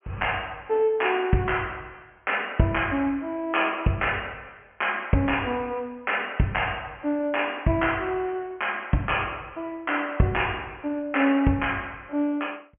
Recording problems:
treble cut off; nothing above 3 kHz

